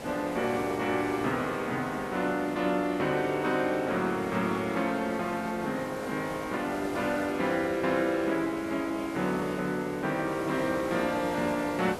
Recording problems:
hiss; SNR 11 dB

